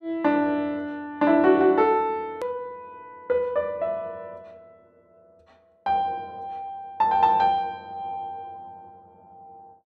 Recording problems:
edit click; at 2.5 s

